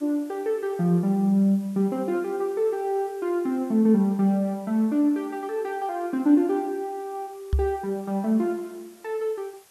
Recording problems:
hiss; SNR 28 dB
microphone bump; at 7.5 s; peak +4 dB vs average level

